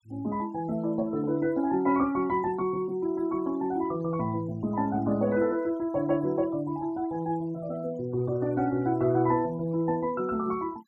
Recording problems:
denoising artefacts; signal-to-artefact ratio 26 dB

